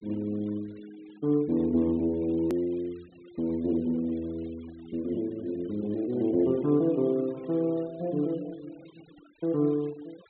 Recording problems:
treble cut off; nothing above 4 kHz
noise reduction artefacts; signal-to-artefact ratio 27 dB
edit click; at 2.5 s

